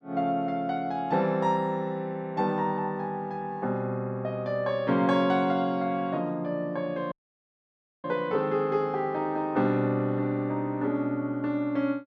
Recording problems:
audio cutting out; at 7 s for 1 s

